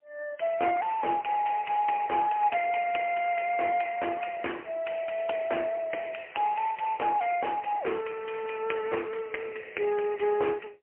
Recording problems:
telephone audio; 300 Hz to 3 kHz, AMR-NB, then MP3

